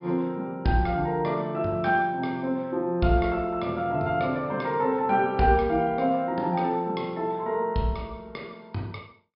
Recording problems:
low-pass filter; nothing above 5.5 kHz

